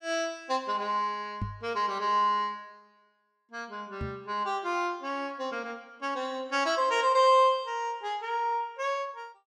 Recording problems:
microphone bump; at 1.5 s and at 4 s; peak -1 dB vs average level

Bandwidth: 13 kHz